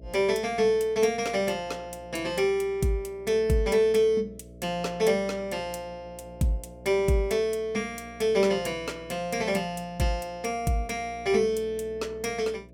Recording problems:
electrical hum; 60 Hz, harmonics up to 660 Hz, SNR 22 dB

